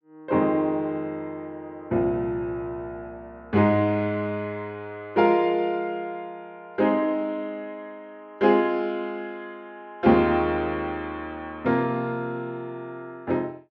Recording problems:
none

